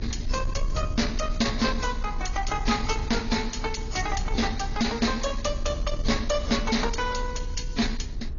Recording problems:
treble cut off; nothing above 6.9 kHz
codec artefacts; AAC, then AAC, log-spectral distance 4 dB
distortion; soft clipping, signal-to-distortion ratio 10 dB
rumble; below 62 Hz, strongest tone 30 Hz, SNR 6 dB

